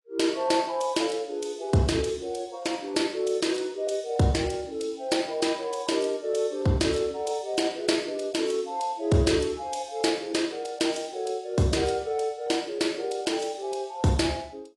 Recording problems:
lossy codec; AAC, log-spectral distance 4 dB, nothing above 10.7 kHz

